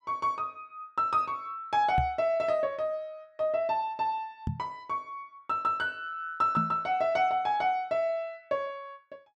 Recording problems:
knock on the microphone; at 2 s, at 4.5 s and at 6.5 s; peak +2 dB vs average level

